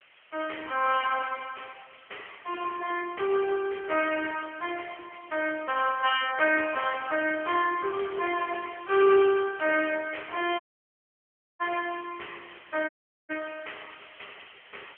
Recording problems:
phone line; 320 Hz to 3.2 kHz, AMR-NB
hiss; SNR 25 dB
dropout; at 11 s for 1 s and at 13 s

